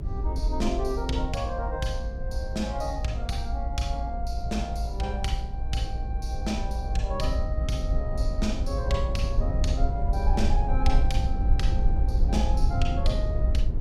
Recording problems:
low-frequency rumble; below 64 Hz, SNR -3 dB

